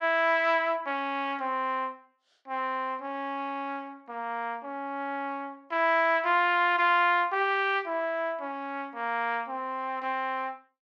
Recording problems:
none

